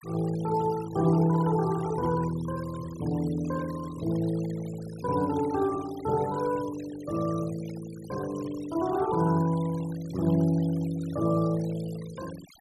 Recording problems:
denoising artefacts; signal-to-artefact ratio 19 dB

